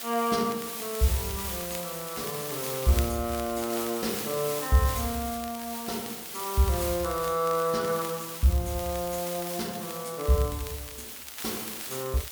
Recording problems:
hiss; slope +1 dB per octave, SNR 6 dB
crackle; vinyl, SNR 17 dB

